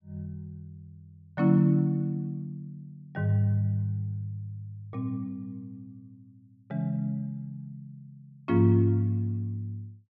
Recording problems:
none

